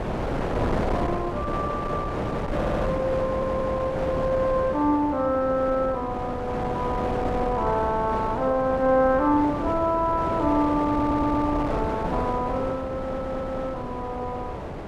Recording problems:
wind on the microphone; below 750 Hz, SNR 5 dB
audio stuttering; 4 times, first at 2.5 s

